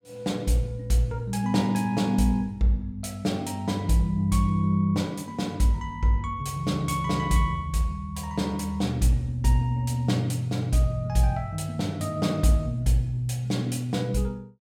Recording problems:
none

